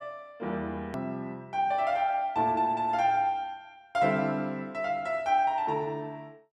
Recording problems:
edit click; at 1 s

